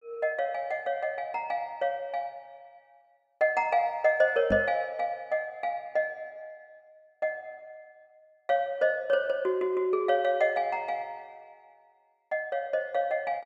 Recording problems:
knock on the microphone; at 4.5 s; peak +1 dB vs average level

